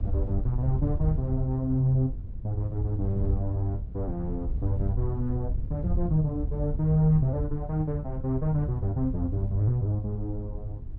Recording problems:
wind on the microphone; below 88 Hz, SNR 5 dB

